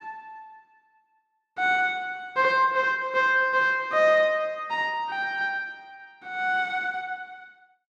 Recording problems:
none

